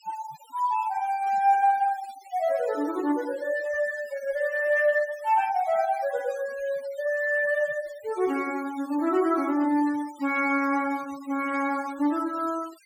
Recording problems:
noise reduction artefacts; signal-to-artefact ratio 20 dB

